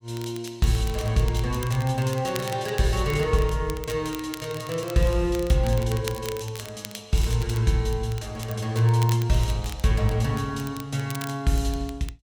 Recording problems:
crackling; vinyl, SNR 16 dB

